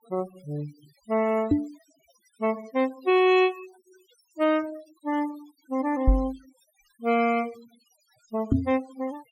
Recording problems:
noise reduction artefacts; signal-to-artefact ratio 22 dB
microphone bump; at 1.5 s, at 6 s and at 8.5 s; peak +8 dB vs average level

